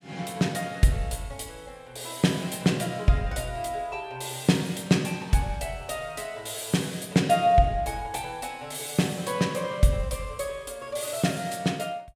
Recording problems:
none

